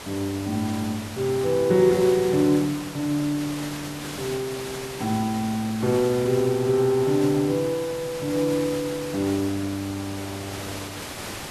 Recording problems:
hiss; slope -3 dB per octave, SNR 11 dB

